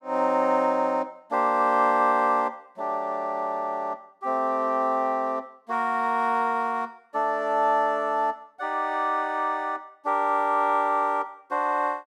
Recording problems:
none

